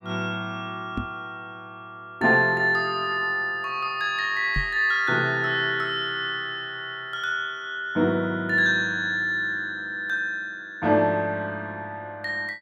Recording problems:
microphone thump; at 1 s and at 4.5 s; peak -2 dB vs average level

